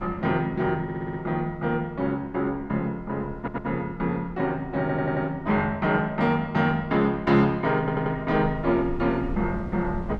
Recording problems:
rumble; below 160 Hz, SNR 17 dB
stutter; 4 times, first at 1 s

